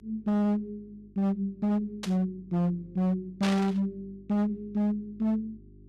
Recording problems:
distortion; hard clipping, signal-to-distortion ratio 8 dB
hum; 50 Hz, harmonics up to 400 Hz, SNR 26 dB
static burst; at 2 s and at 3.5 s; peak 0 dB vs average level

